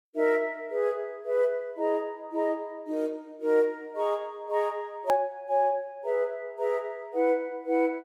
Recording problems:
edit click; at 5 s

